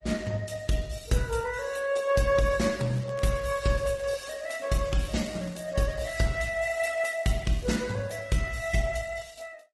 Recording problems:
codec artefacts; MP3, then Opus, log-spectral distance 5 dB, nothing above 12 kHz
crackling; from 3 to 7 s; loose cable, SNR 24 dB

